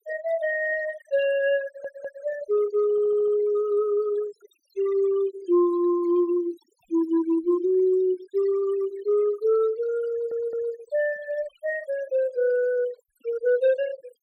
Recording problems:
denoising artefacts; signal-to-artefact ratio 19 dB
stutter; at 1.5 s, at 3 s and at 10 s

